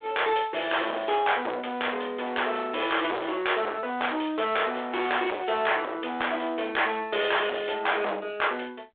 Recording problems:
telephone audio; 340 Hz to 3.6 kHz, G.726
distorted audio; hard clipping, signal-to-distortion ratio 6 dB

